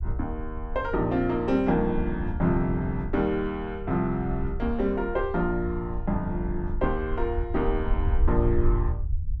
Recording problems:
low-frequency rumble; below 66 Hz, SNR 5 dB

